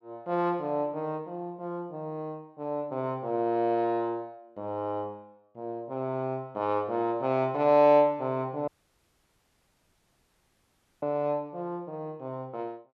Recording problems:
audio cutting out; at 8.5 s for 2.5 s

